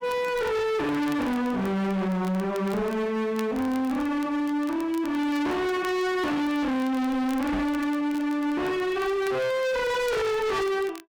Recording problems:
distortion; hard clipping, signal-to-distortion ratio 6 dB
crackle; vinyl, SNR 23 dB
microphone bump; at 7.5 s; peak +2 dB vs average level

